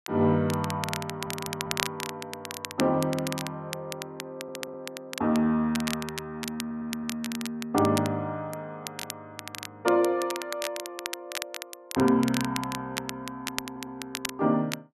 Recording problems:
crackling; vinyl, SNR 8 dB
audio stuttering; 4 times, first at 1 s

